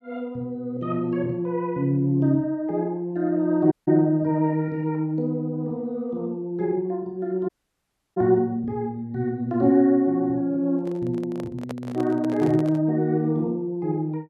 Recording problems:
dropout; at 3.5 s and at 7.5 s for 0.5 s
handling noise; from 11 to 13 s; peak -7 dB vs average level

